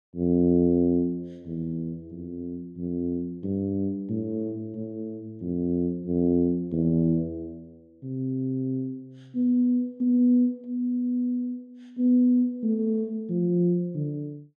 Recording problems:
none

